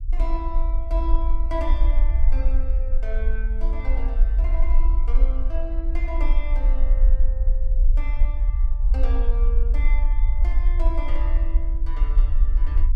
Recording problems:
low-frequency rumble; below 44 Hz, SNR -13 dB

